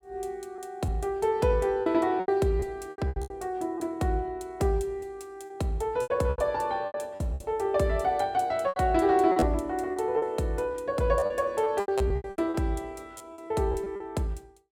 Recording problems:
packet loss; 12% of the sound replaced, filled with repeated pitch periods

